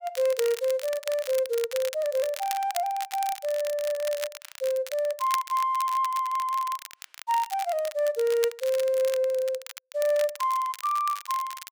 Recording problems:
crackle; vinyl, SNR 12 dB

